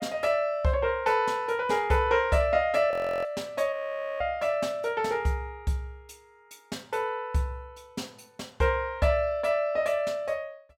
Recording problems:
audio freezing; at 3 s and at 3.5 s

